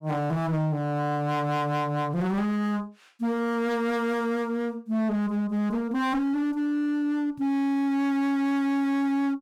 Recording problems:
distortion; hard clipping, uneven, signal-to-distortion ratio 5 dB

